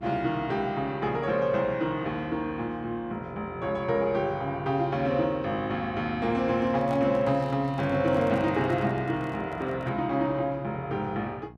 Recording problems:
electrical hum; 60 Hz, harmonics up to 1.1 kHz, SNR 21 dB
microphone handling noise; from 6.5 to 10 s; peak -10 dB vs average level

